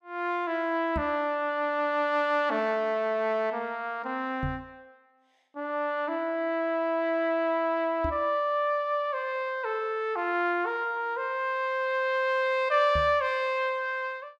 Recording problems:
microphone bump; 4 times, first at 1 s; peak -2 dB vs average level

